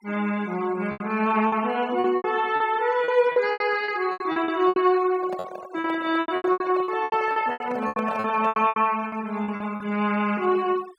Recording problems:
denoising artefacts; signal-to-artefact ratio 20 dB
lost packets; 16% of the sound replaced, filled with repeated pitch periods
handling noise; from 5 to 9 s; peak -5 dB vs average level

